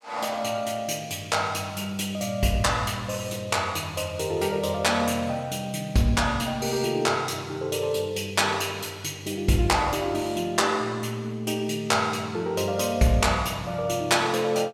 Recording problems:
none

